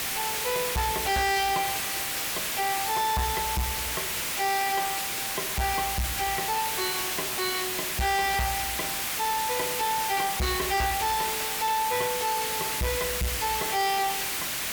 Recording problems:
distortion; soft clipping, signal-to-distortion ratio 7 dB
background hiss; slope 0 dB per octave, SNR 0 dB

